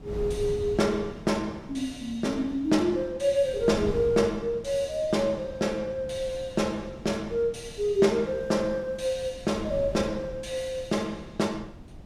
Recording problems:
wind on the microphone; below 230 Hz, SNR 15 dB

